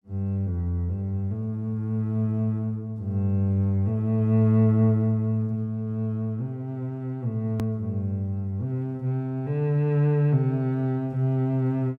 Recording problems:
hard cut with a click; at 7.5 s

